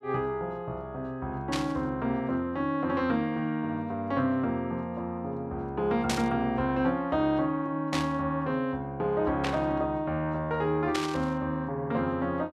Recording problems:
static burst; 5 times, first at 1.5 s; peak +3 dB vs average level

